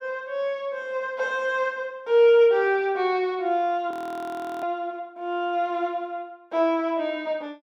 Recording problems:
audio freezing; at 4 s for 0.5 s

